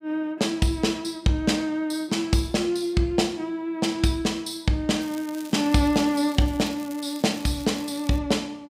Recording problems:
crackling; from 5 to 8 s; loose cable, SNR 20 dB

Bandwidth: 15.5 kHz